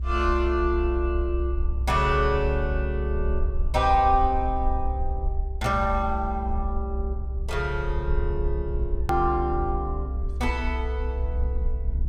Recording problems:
low-frequency rumble; below 64 Hz, strongest tone 64 Hz, SNR 2 dB
hard cut with a click; at 9 s

